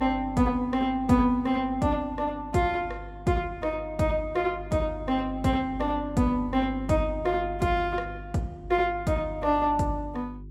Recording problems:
electrical hum; 50 Hz, harmonics up to 400 Hz, SNR 14 dB

